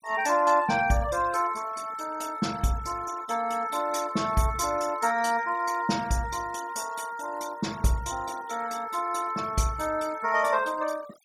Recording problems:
denoising artefacts; signal-to-artefact ratio 18 dB

